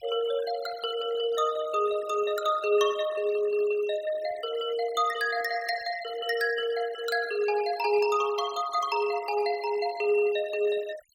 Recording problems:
noise reduction artefacts; signal-to-artefact ratio 16 dB

